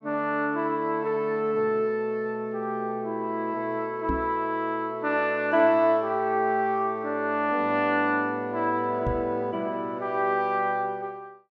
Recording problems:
microphone bump; at 4 s and at 9 s; peak -1 dB vs average level

